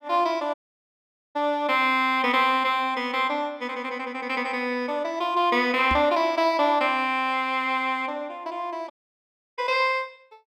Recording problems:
dropout; at 0.5 s for 1 s and at 9 s for 0.5 s
knock on the microphone; at 6 s; peak -1 dB vs average level

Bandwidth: 14.5 kHz